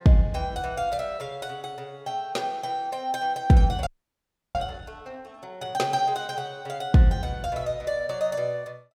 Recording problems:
audio freezing; at 4 s for 0.5 s

